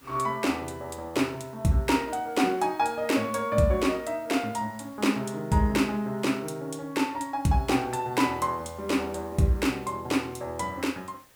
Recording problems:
hiss; slope -2 dB per octave, SNR 27 dB

